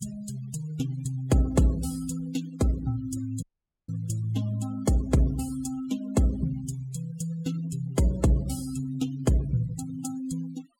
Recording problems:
denoising artefacts; signal-to-artefact ratio 17 dB
audio cutting out; at 3.5 s

